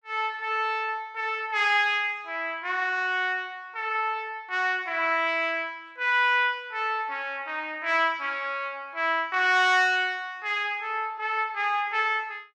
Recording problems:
none

